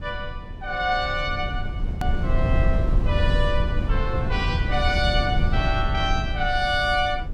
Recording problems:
low-frequency rumble; below 100 Hz, SNR 0 dB
hard cut with a click; at 2 s

